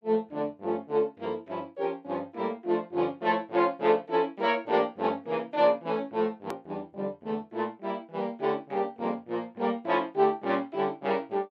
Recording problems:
edit click; at 6.5 s

